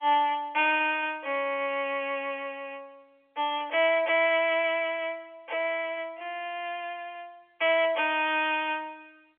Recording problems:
phone line; 340 Hz to 3.4 kHz, G.711

